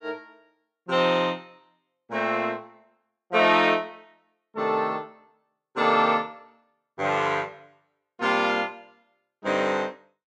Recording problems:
none

